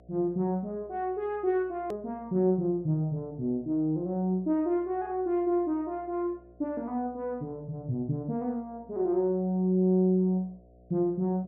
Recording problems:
hum; 60 Hz, harmonics up to 720 Hz, SNR 27 dB
click at an edit; at 2 s

